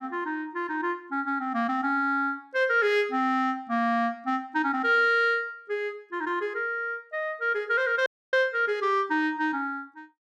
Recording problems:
dropout; at 8 s

